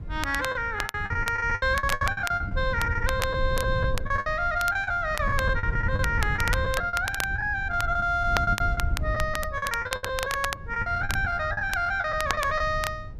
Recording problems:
rumble; below 100 Hz, SNR 7 dB
crackling; vinyl, SNR 9 dB
packet loss; 17% of the sound replaced, filled with the last packet

